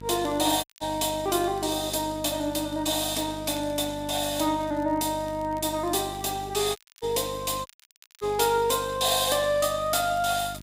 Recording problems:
hum; 50 Hz, harmonics up to 1.3 kHz, SNR 16 dB
crackle; vinyl, SNR 27 dB
audio cutting out; at 0.5 s, at 7 s and at 7.5 s for 0.5 s

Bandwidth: 15.5 kHz